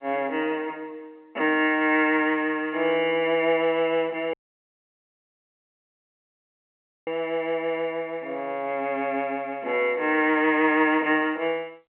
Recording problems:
telephone audio; 260 Hz to 3.2 kHz, G.711
dropout; at 4.5 s for 2.5 s

